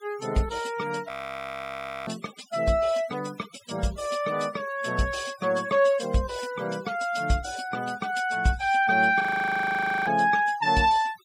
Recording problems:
noise reduction artefacts; signal-to-artefact ratio 20 dB
frozen audio; at 1 s for 1 s and at 9 s for 1 s

